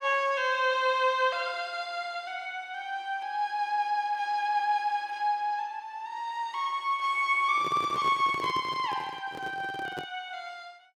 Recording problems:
handling noise; from 7.5 to 10 s; peak -6 dB vs average level

